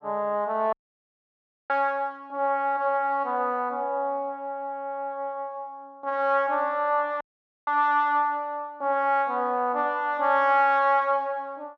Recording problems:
dropout; at 0.5 s for 1 s and at 7 s

